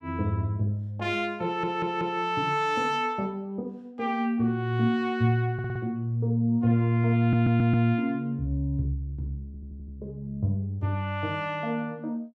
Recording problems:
stutter; 4 times, first at 1.5 s

